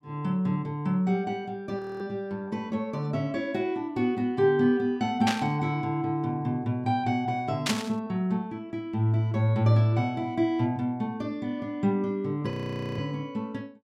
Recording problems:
frozen audio; at 2 s and at 13 s
burst of static; at 5.5 s and at 7.5 s; peak +4 dB vs average level

